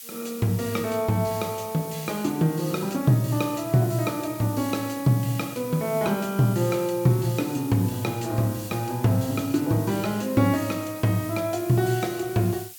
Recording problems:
hiss; slope +4 dB per octave, SNR 15 dB

